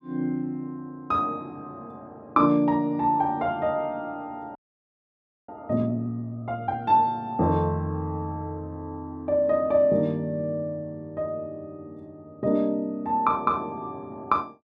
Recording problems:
audio freezing; at 4.5 s for 1 s

